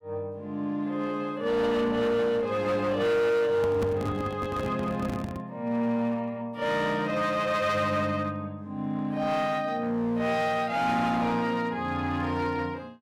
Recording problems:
distorted audio; hard clipping, uneven, signal-to-distortion ratio 11 dB
microphone handling noise; from 3.5 to 5.5 s; peak 0 dB vs average level

